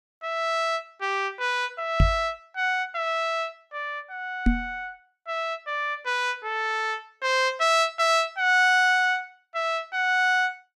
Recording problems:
microphone bump; at 2 s and at 4.5 s; peak +7 dB vs average level

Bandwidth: 15.5 kHz